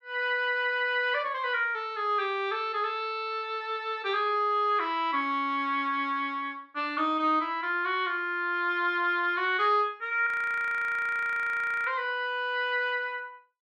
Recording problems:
audio freezing; at 10 s for 1.5 s

